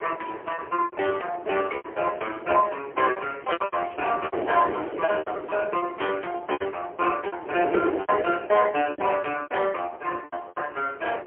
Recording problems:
phone line; 300 Hz to 3.2 kHz, AMR-NB, then MP3
wind on the microphone; below 620 Hz, SNR 9 dB
packet loss; 12% of the sound replaced, filled with repeated pitch periods
crackle; from 3.5 to 5 s; loose cable, SNR 27 dB

